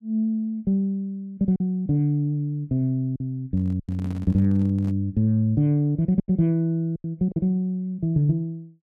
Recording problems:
packet loss; 4% of the sound replaced, filled with silence
microphone handling noise; from 3.5 to 5 s; peak -10 dB vs average level

